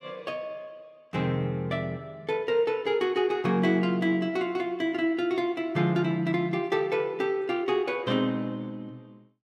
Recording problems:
none

